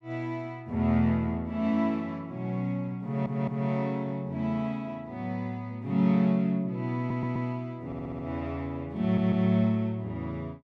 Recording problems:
stutter; 4 times, first at 3 s

